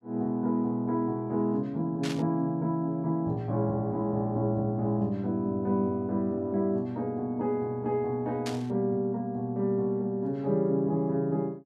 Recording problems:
burst of static; at 2 s and at 8.5 s; peak -4 dB vs average level

